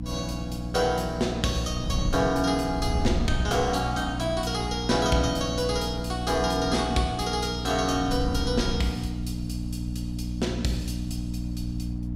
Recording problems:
electrical hum; 60 Hz, harmonics up to 300 Hz, SNR 6 dB
wind on the microphone; below 120 Hz, SNR 10 dB

